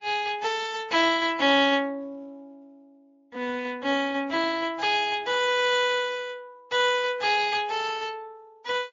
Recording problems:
lossy codec; Speex, then MP3, log-spectral distance 4 dB, nothing above 6.9 kHz

